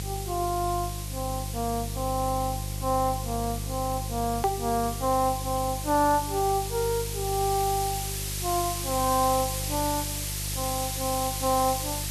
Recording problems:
hum; 50 Hz, harmonics up to 550 Hz, SNR 7 dB
background hiss; SNR 5 dB
click at an edit; at 4.5 s

